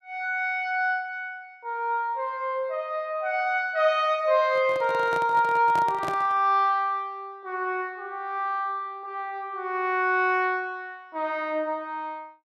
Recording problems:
microphone handling noise; from 4.5 to 6.5 s; peak -3 dB vs average level

